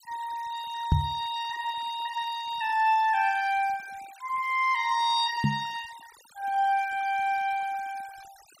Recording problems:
noise reduction artefacts; signal-to-artefact ratio 21 dB
microphone thump; at 1 s and at 5.5 s; peak +8 dB vs average level

